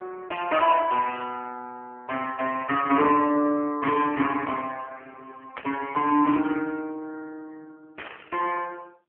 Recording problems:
phone line; 190 Hz to 3.1 kHz, AMR-NB
burst of static; at 5.5 s and at 8 s; peak -6 dB vs average level

